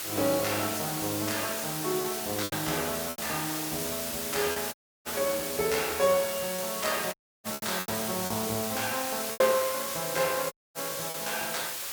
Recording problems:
hiss; slope +1 dB per octave, SNR 2 dB
lost packets; 5% of the sound replaced, filled with repeated pitch periods
dropout; at 4.5 s, at 7 s and at 11 s

